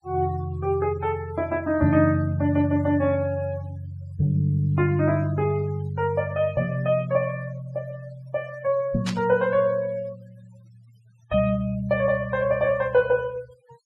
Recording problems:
denoising artefacts; signal-to-artefact ratio 24 dB
burst of static; at 9 s; peak -4 dB vs average level

